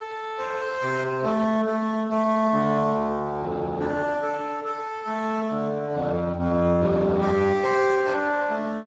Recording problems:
codec artefacts; Speex, log-spectral distance 4 dB

